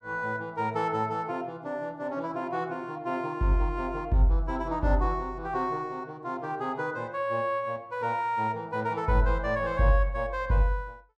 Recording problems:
none

